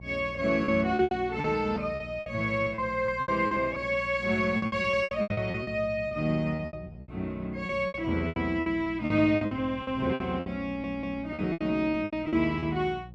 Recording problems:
mains hum; 60 Hz, harmonics up to 540 Hz, SNR 17 dB
lost packets; 16% of the sound replaced, filled with repeated pitch periods
stutter; at 11 s

